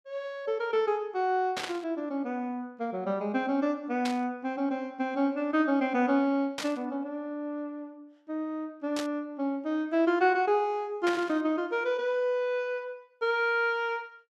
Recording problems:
burst of static; 5 times, first at 1.5 s; peak -1 dB vs average level

